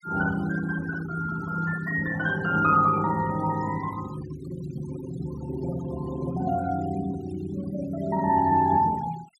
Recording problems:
denoising artefacts; signal-to-artefact ratio 17 dB

